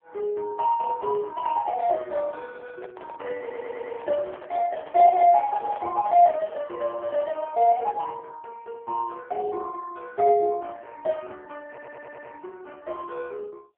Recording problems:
phone line; 280 Hz to 2.9 kHz, AMR-NB
microphone handling noise; from 2.5 to 6 s; peak -10 dB vs average level
audio stuttering; at 3.5 s and at 12 s

